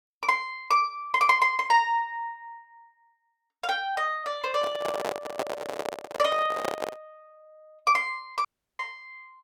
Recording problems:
microphone handling noise; from 4.5 to 7 s; peak +1 dB vs average level
dropout; at 8.5 s

